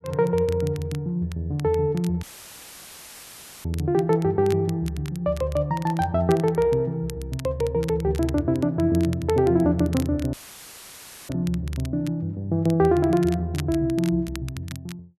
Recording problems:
crackle; vinyl, SNR 20 dB
audio cutting out; at 2 s for 1.5 s and at 10 s for 1 s; filled with static

